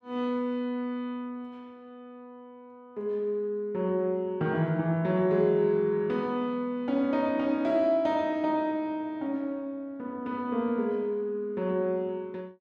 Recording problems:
none

